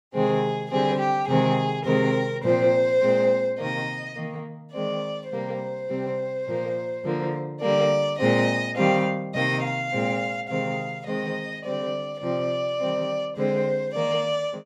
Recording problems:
none

